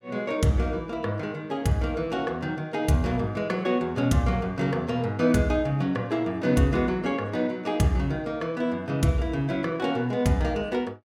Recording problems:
none

